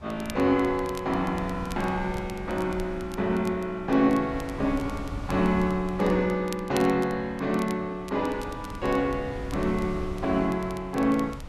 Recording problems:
wind on the microphone; below 150 Hz, SNR 14 dB
crackling; vinyl, SNR 21 dB

